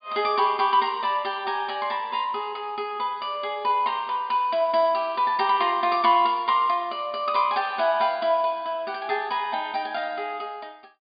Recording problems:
low-pass filter; nothing above 4.8 kHz

